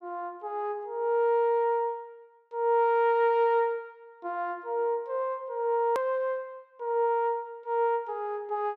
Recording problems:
hard cut with a click; at 6 s

